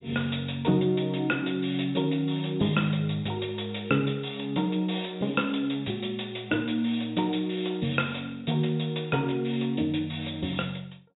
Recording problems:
low-pass filter; nothing above 4 kHz

